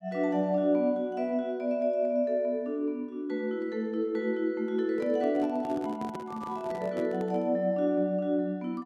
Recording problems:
microphone handling noise; from 5 to 7.5 s; peak -7 dB vs average level

